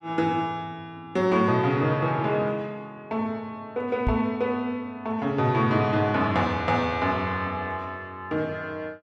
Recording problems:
microphone bump; at 4 s; peak +2 dB vs average level

